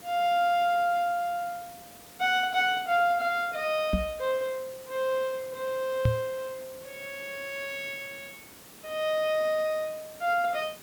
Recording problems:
hiss; slope -3 dB per octave, SNR 19 dB
knock on the microphone; at 4 s and at 6 s; peak +7 dB vs average level

